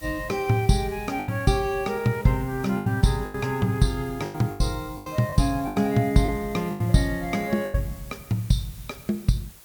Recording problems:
hiss; slope -1 dB per octave, SNR 21 dB
lost packets; 8% of the sound replaced, filled with the last packet

